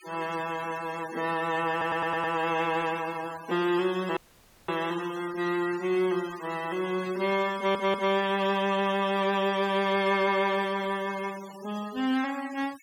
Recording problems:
denoising artefacts; signal-to-artefact ratio 17 dB
stutter; at 1.5 s and at 7.5 s
audio cutting out; at 4 s for 0.5 s

